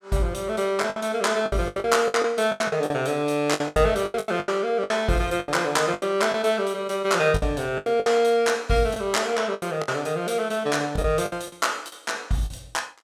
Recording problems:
lost packets; 13% of the sound replaced, filled with the last packet

